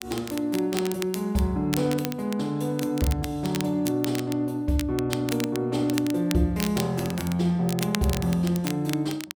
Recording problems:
crackle; vinyl, SNR 11 dB

